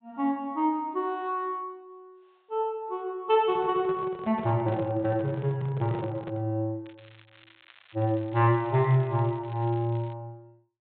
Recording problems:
treble cut off; nothing above 4 kHz
handling noise; from 3.5 to 6.5 s; peak -7 dB vs average level
crackling; from 7 to 10 s; loose cable, SNR 27 dB

